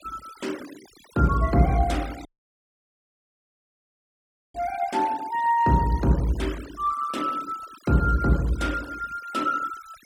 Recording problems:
noise reduction artefacts; signal-to-artefact ratio 19 dB
dropout; at 2.5 s for 2.5 s

